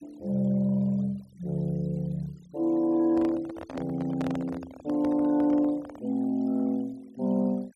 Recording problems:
noise reduction artefacts; signal-to-artefact ratio 26 dB
microphone handling noise; from 3 to 6 s; peak -5 dB vs average level

